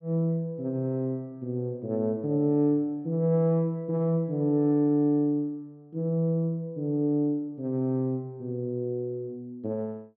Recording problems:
none

